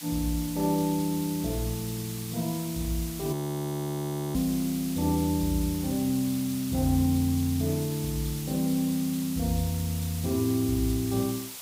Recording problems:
background hiss; slope +2 dB per octave, SNR 10 dB
frozen audio; at 3.5 s for 1 s

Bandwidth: 15.5 kHz